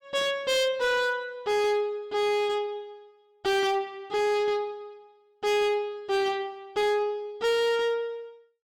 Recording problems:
distorted audio; hard clipping, signal-to-distortion ratio 10 dB

